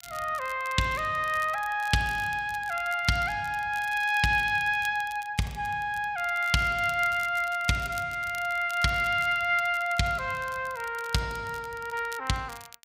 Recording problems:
crackling; vinyl, SNR 21 dB

